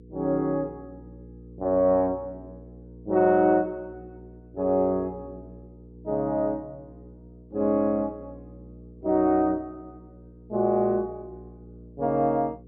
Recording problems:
hum; 60 Hz, harmonics up to 480 Hz, SNR 22 dB

